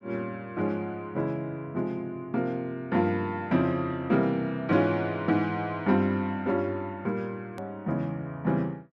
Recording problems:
edit click; at 7.5 s

